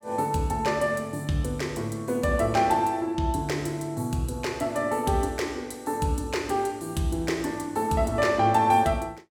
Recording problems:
none

